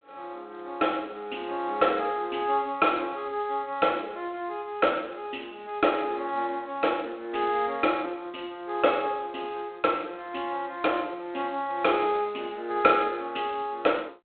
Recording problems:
phone line; 220 Hz to 3.7 kHz, G.726

